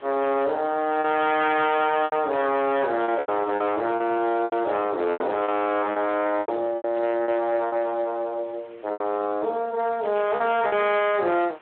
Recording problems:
phone line; 240 Hz to 3.5 kHz, Speex
distorted audio; hard clipping, signal-to-distortion ratio 10 dB
background hiss; SNR 28 dB
lost packets; 8% of the sound replaced, filled with repeated pitch periods
static burst; 4 times, first at 1.5 s; peak -13 dB vs average level

